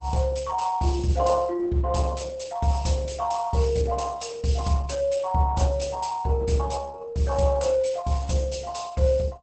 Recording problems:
lossy codec; Opus, log-spectral distance 4 dB, nothing above 8.2 kHz

